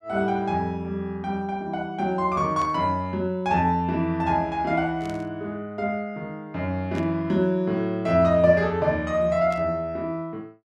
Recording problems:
static burst; 4 times, first at 2.5 s; peak -13 dB vs average level

